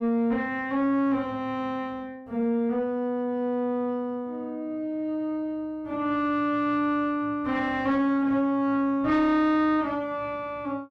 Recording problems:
distorted audio; soft clipping, signal-to-distortion ratio 10 dB

